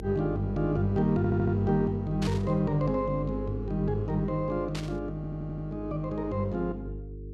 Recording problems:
hum; 50 Hz, harmonics up to 450 Hz, SNR 10 dB
audio stuttering; at 1 s and at 5 s
burst of static; at 2 s and at 4.5 s; peak -5 dB vs average level

